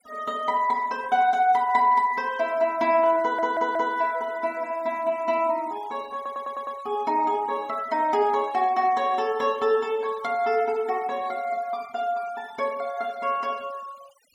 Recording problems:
noise reduction artefacts; signal-to-artefact ratio 24 dB
audio stuttering; at 3 s and at 6 s

